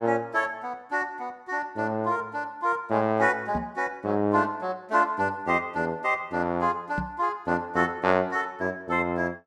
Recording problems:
microphone bump; at 3.5 s and at 7 s; peak -1 dB vs average level

